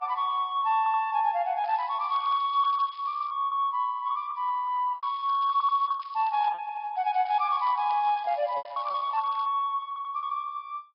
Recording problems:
treble missing; nothing above 5.2 kHz
lossy compression; Vorbis, log-spectral distance 2 dB
packet loss; 13% of the sound replaced, filled with repeated pitch periods
audio stuttering; 4 times, first at 1 s
crackling; from 1.5 to 3.5 s, from 5 to 6.5 s and from 7 to 9.5 s; loose cable, SNR 27 dB

